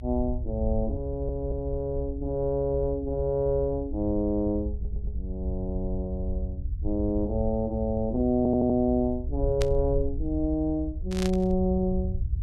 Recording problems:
low-frequency rumble; below 70 Hz, SNR 6 dB
audio stuttering; at 1 s, at 4.5 s and at 8.5 s
burst of static; at 9.5 s and at 11 s; peak -2 dB vs average level

